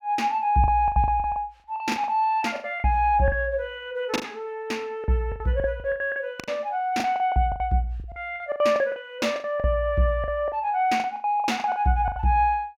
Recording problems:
lost packets; 16% of the sound replaced, filled with the last packet

